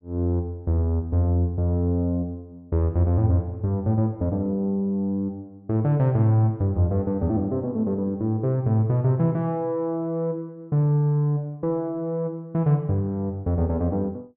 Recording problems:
none

